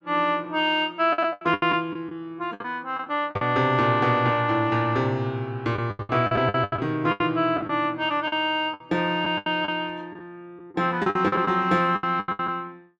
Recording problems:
lost packets; 13% of the sound replaced, filled with the last packet

